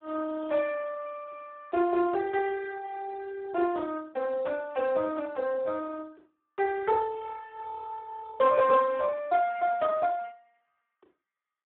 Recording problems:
phone line; 320 Hz to 2.1 kHz, Speex

